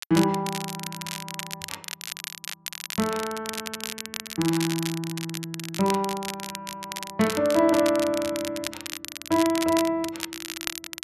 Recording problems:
crackling; vinyl, SNR 8 dB

